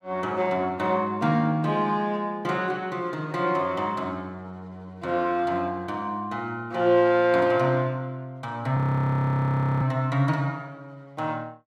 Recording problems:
frozen audio; at 9 s for 1 s

